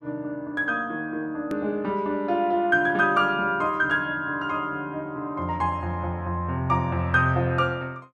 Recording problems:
click at an edit; at 1.5 s

